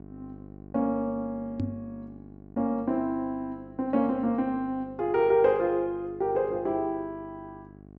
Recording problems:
low-pass filter; nothing above 8 kHz
electrical hum; 50 Hz, harmonics up to 1.1 kHz, SNR 19 dB
microphone bump; at 1.5 s; peak +1 dB vs average level

